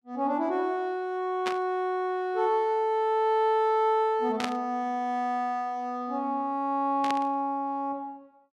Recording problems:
static burst; at 1.5 s, at 4.5 s and at 7 s; peak 0 dB vs average level

